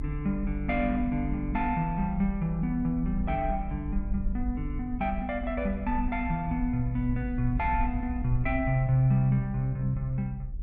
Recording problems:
low-frequency rumble; below 56 Hz, SNR 7 dB

